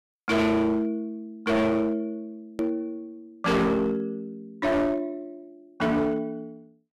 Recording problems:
distortion; hard clipping, uneven, signal-to-distortion ratio 7 dB
hard cut with a click; at 2.5 s

